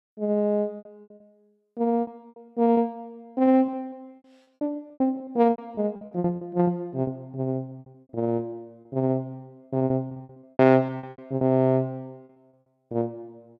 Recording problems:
lost packets; 16% of the sound replaced, filled with repeated pitch periods

